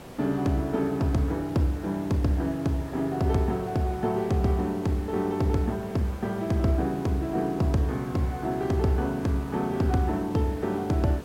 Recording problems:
hiss; slope -7 dB per octave, SNR 16 dB

